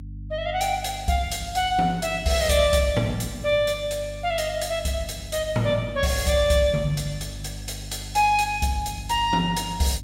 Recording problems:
electrical hum; 50 Hz, harmonics up to 300 Hz, SNR 15 dB

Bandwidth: 16 kHz